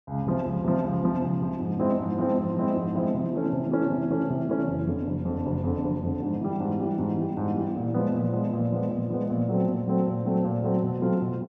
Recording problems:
none

